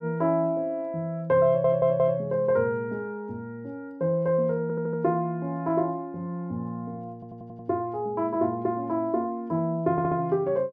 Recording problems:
audio stuttering; 4 times, first at 1.5 s

